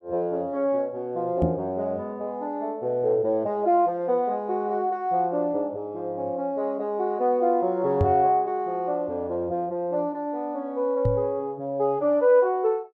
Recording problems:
knock on the microphone; at 1.5 s, at 8 s and at 11 s; peak +4 dB vs average level

